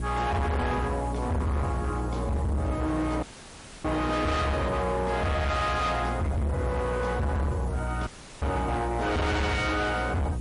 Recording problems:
lossy compression; MP3, log-spectral distance 6 dB, nothing above 10.4 kHz
distorted audio; hard clipping, signal-to-distortion ratio 7 dB
hum; 60 Hz, harmonics up to 360 Hz, SNR 6 dB
background hiss; slope -2 dB per octave, SNR 23 dB
audio cutting out; at 3 s for 0.5 s and at 8 s

